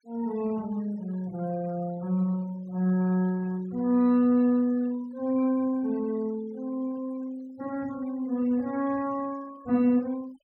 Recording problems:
denoising artefacts; signal-to-artefact ratio 26 dB

